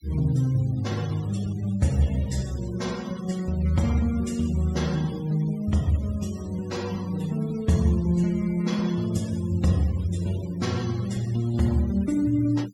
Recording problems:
denoising artefacts; signal-to-artefact ratio 20 dB

